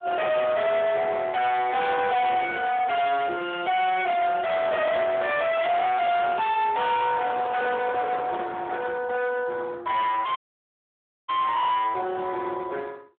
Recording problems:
telephone audio; 300 Hz to 3.7 kHz, Speex
distortion; hard clipping, signal-to-distortion ratio 6 dB
handling noise; from 7 to 8.5 s; peak -5 dB vs average level
audio cutting out; at 10 s for 1 s

